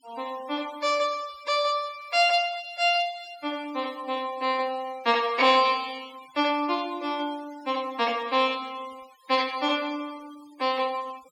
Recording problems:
noise reduction artefacts; signal-to-artefact ratio 22 dB

